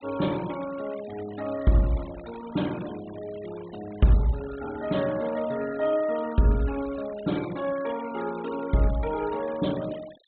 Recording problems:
treble missing; nothing above 4 kHz
noise reduction artefacts; signal-to-artefact ratio 18 dB

